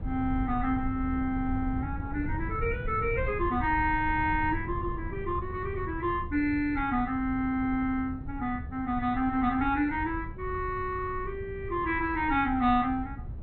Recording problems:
lossy compression; MP2, log-spectral distance 2 dB, nothing above 3.7 kHz
rumble; below 110 Hz, SNR 9 dB

